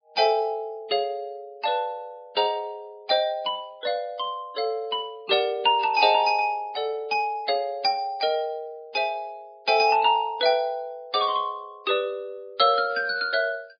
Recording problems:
lossy compression; MP3, log-spectral distance 2 dB, nothing above 5 kHz

